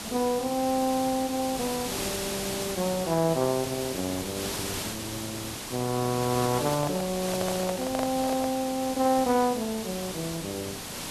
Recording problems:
background hiss; slope -2 dB per octave, SNR 5 dB
microphone handling noise; from 6.5 to 8.5 s; peak 0 dB vs average level

